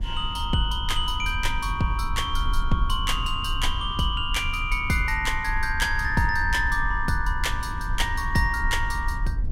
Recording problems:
low-frequency rumble; below 58 Hz, SNR 6 dB

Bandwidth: 16.5 kHz